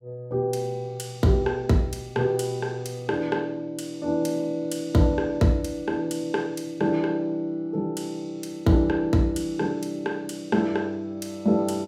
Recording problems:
none

